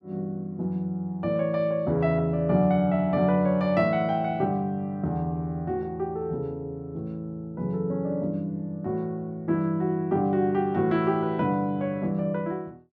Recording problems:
none

